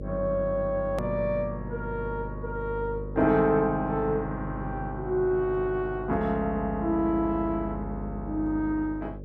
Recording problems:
hum; 50 Hz, harmonics up to 600 Hz, SNR 10 dB
click at an edit; at 1 s

